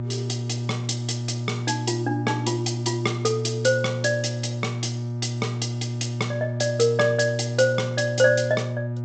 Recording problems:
codec artefacts; G.722, log-spectral distance 4 dB, nothing above 7.8 kHz
hum; 60 Hz, harmonics up to 600 Hz, SNR 4 dB

